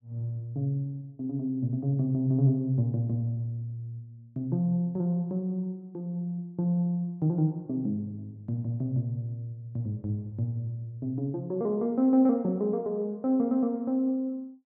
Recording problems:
none

